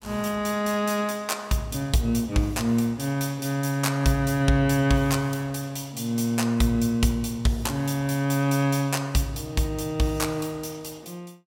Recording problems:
none

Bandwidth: 16.5 kHz